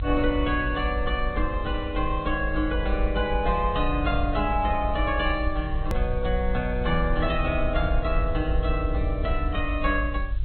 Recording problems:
treble missing; nothing above 3.5 kHz
codec artefacts; AAC, log-spectral distance 3 dB
hiss; SNR 27 dB
low-frequency rumble; below 58 Hz, SNR 2 dB
edit click; at 6 s

